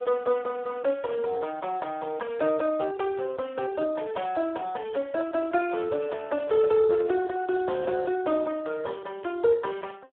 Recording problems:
phone line; 320 Hz to 3.7 kHz, Speex
handling noise; from 5 to 8 s; peak -11 dB vs average level

